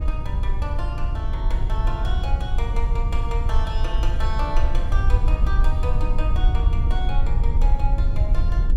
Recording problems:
low-frequency rumble; below 60 Hz, SNR -9 dB

